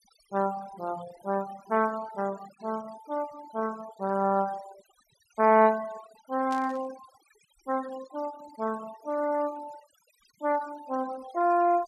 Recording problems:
denoising artefacts; signal-to-artefact ratio 19 dB
burst of static; at 6.5 s; peak -11 dB vs average level

